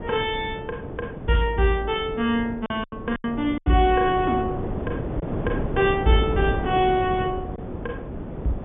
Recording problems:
treble missing; nothing above 3.6 kHz
wind noise; below 420 Hz, SNR 8 dB
packet loss; 4% of the sound replaced, filled with silence

